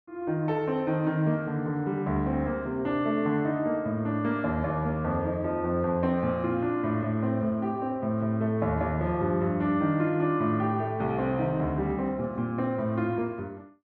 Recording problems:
none

